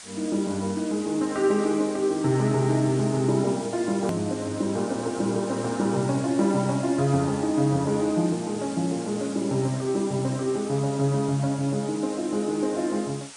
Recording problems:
lossy compression; MP3, log-spectral distance 9 dB, nothing above 13.1 kHz
background hiss; slope +1 dB per octave, SNR 15 dB
click at an edit; at 4 s

